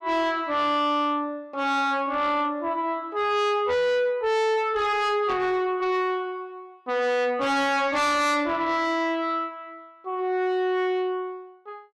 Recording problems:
distorted audio; soft clipping, signal-to-distortion ratio 7 dB

